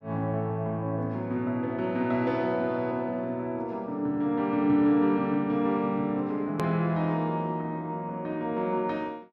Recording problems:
click at an edit; at 6.5 s

